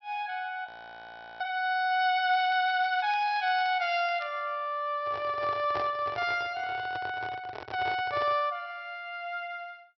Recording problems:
treble missing; nothing above 5.7 kHz
frozen audio; at 0.5 s for 0.5 s
crackling; from 2.5 to 4 s; loose cable, SNR 23 dB
handling noise; from 5 to 8.5 s; peak -3 dB vs average level

